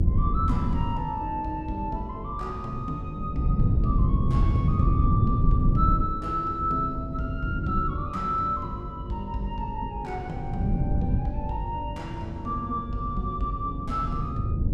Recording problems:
hum; 50 Hz, harmonics up to 550 Hz, SNR 10 dB
wind noise; below 150 Hz, SNR -2 dB

